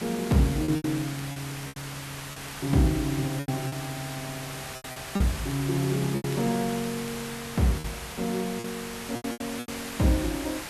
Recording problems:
background hiss; SNR 8 dB
crackle; vinyl, SNR 27 dB
packet loss; 9% of the sound replaced, filled with repeated pitch periods

